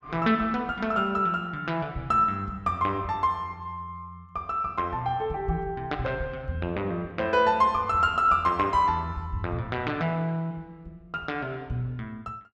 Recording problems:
none

